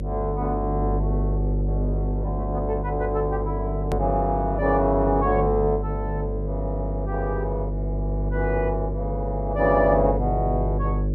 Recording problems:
hum; 50 Hz, harmonics up to 550 Hz, SNR 2 dB
hard cut with a click; at 4 s

